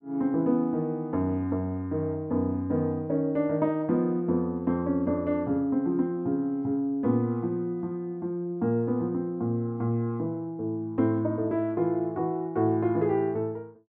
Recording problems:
none

